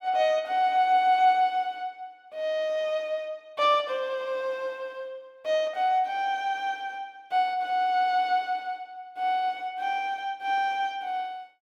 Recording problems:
none

